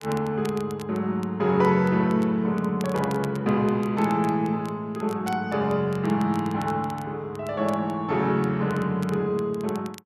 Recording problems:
crackling; vinyl, SNR 23 dB

